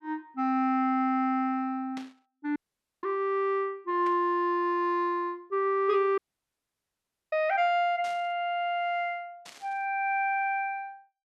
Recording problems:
burst of static; 4 times, first at 2 s; peak -12 dB vs average level
audio cutting out; at 2.5 s and at 6 s for 1 s

